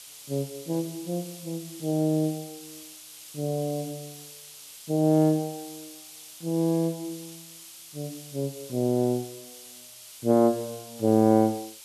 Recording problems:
hiss; SNR 16 dB

